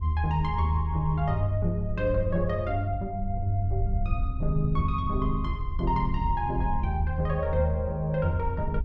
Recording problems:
wind on the microphone; below 74 Hz, SNR 6 dB

